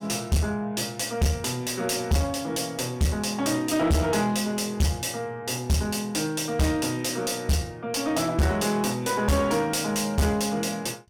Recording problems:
distortion; soft clipping, signal-to-distortion ratio 6 dB

